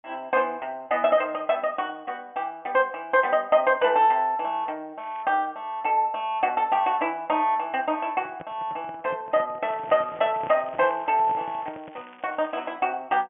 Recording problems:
treble cut off; nothing above 3.2 kHz
crackle; at 5 s and from 9.5 to 13 s; loose cable, SNR 27 dB
handling noise; from 8 to 12 s; peak -10 dB vs average level

